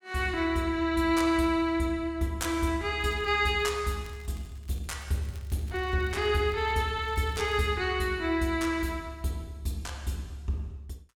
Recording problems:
crackling; from 3 to 8 s; loose cable, SNR 27 dB

